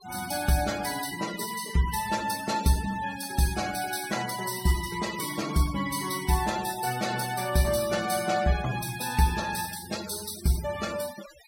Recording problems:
denoising artefacts; signal-to-artefact ratio 12 dB

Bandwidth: 16 kHz